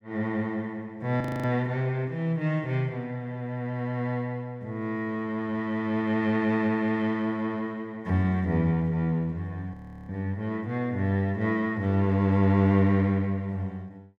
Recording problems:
audio freezing; at 1 s and at 9.5 s

